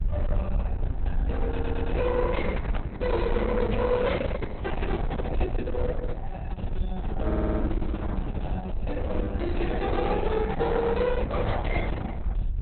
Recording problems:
lossy codec; Opus, log-spectral distance 3 dB, nothing above 4 kHz
distortion; hard clipping, uneven, signal-to-distortion ratio 10 dB
rumble; below 72 Hz, SNR 2 dB
stutter; at 1.5 s and at 7.5 s
microphone handling noise; from 2.5 to 5 s; peak 0 dB vs average level

